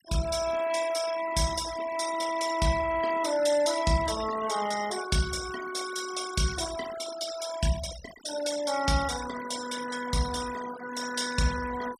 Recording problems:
noise reduction artefacts; signal-to-artefact ratio 11 dB

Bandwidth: 15 kHz